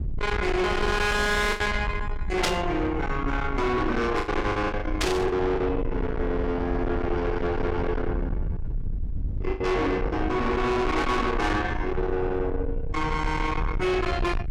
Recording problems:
distorted audio; soft clipping, signal-to-distortion ratio 7 dB
low-frequency rumble; below 360 Hz, SNR 5 dB
packet loss; 4% of the sound replaced, filled with the last packet
static burst; at 2.5 s and at 5 s; peak +4 dB vs average level

